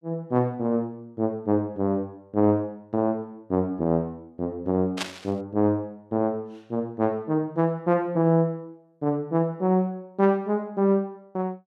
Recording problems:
burst of static; at 5 s; peak +2 dB vs average level

